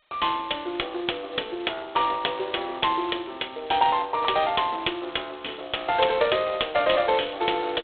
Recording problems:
telephone audio; 280 Hz to 3.6 kHz, G.726

